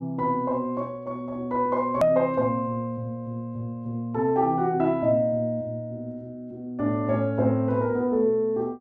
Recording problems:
click at an edit; at 2 s

